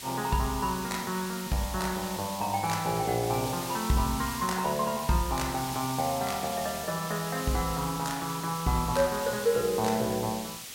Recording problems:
hiss; slope +1 dB per octave, SNR 8 dB

